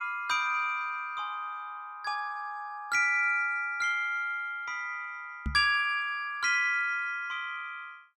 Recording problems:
microphone thump; at 5.5 s; peak -1 dB vs average level

